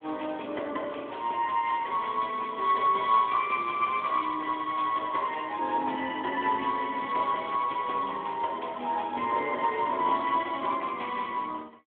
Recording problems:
phone line; 260 Hz to 3.5 kHz, Speex

